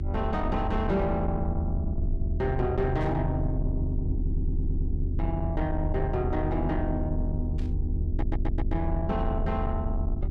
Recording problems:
distorted audio; soft clipping, signal-to-distortion ratio 10 dB
mains hum; 50 Hz, harmonics up to 400 Hz, SNR 9 dB
low-frequency rumble; below 80 Hz, strongest tone 32 Hz, SNR 0 dB
burst of static; at 3 s and at 7.5 s; peak -14 dB vs average level
stutter; at 4 s and at 8 s

